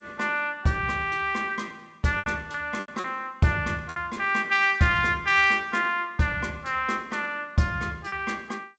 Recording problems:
codec artefacts; G.722, log-spectral distance 2 dB, nothing above 7.8 kHz
packet loss; 4% of the sound replaced, filled with repeated pitch periods

